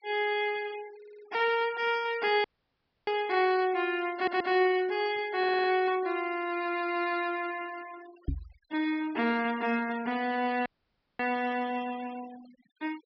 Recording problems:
treble missing; nothing above 5.5 kHz
denoising artefacts; signal-to-artefact ratio 20 dB
audio stuttering; at 1 s, at 4 s and at 5.5 s
dropout; at 2.5 s for 0.5 s and at 11 s for 0.5 s
microphone bump; at 8.5 s; peak +1 dB vs average level

